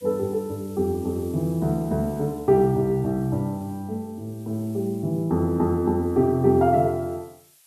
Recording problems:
background hiss; slope +3 dB per octave, SNR 27 dB

